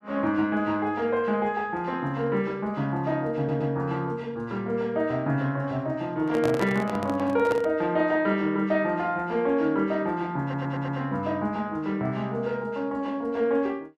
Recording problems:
audio stuttering; at 3.5 s and at 10 s
handling noise; from 6 to 7.5 s; peak 0 dB vs average level

